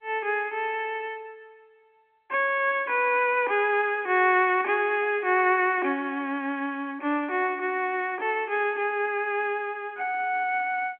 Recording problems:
telephone audio; 240 Hz to 3.2 kHz, G.711

